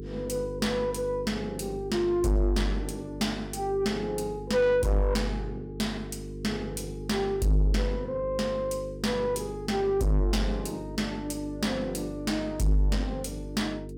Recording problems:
distortion; soft clipping, signal-to-distortion ratio 7 dB
hum; 50 Hz, harmonics up to 450 Hz, SNR 10 dB

